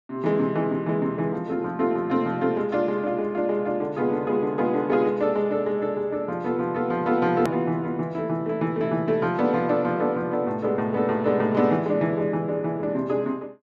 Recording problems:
hard cut with a click; at 7.5 s

